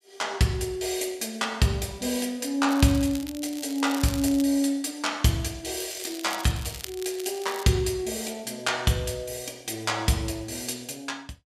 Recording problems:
crackle; from 2.5 to 4.5 s and from 6 to 7.5 s; loose cable, SNR 13 dB

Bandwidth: 14.5 kHz